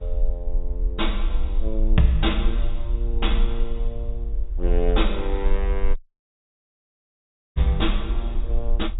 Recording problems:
low-pass filter; nothing above 4 kHz
low-frequency rumble; below 44 Hz, strongest tone 20 Hz, SNR -1 dB
wind on the microphone; below 550 Hz, SNR 22 dB
dropout; at 6 s for 1.5 s

